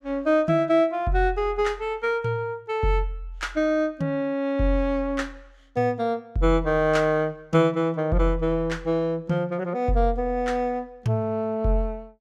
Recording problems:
none

